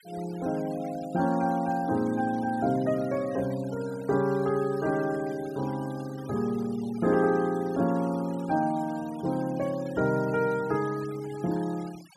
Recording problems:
denoising artefacts; signal-to-artefact ratio 21 dB

